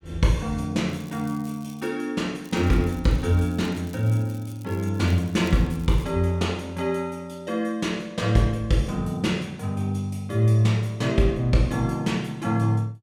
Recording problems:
crackle; at 1 s and from 2.5 to 6 s; loose cable, SNR 26 dB

